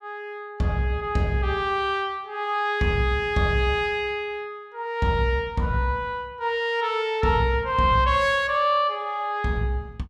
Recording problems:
none

